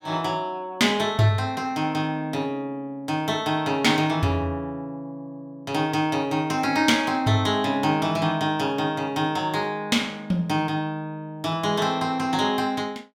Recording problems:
none

